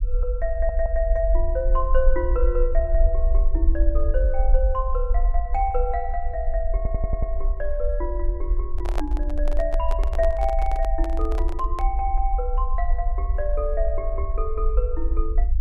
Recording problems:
low-frequency rumble; below 48 Hz, SNR -3 dB
stutter; at 0.5 s and at 7 s
handling noise; from 8.5 to 12 s; peak +2 dB vs average level

